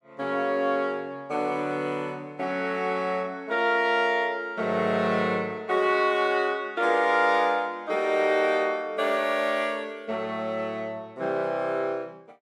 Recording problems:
none

